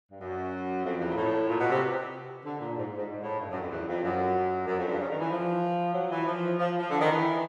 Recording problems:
none

